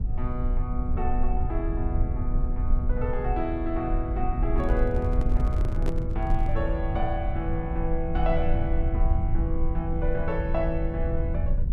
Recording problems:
rumble; below 64 Hz, SNR -2 dB
microphone handling noise; from 4.5 to 6.5 s; peak +1 dB vs average level

